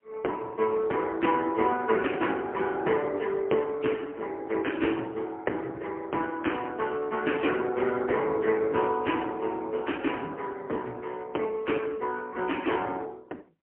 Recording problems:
phone line; 260 Hz to 3.1 kHz, AMR-NB, then MP3

